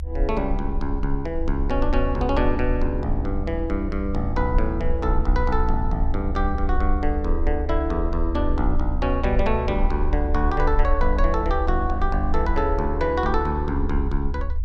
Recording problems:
rumble; below 68 Hz, SNR 2 dB

